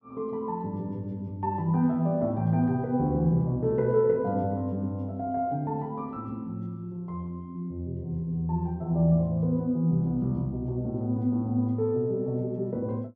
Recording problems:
none

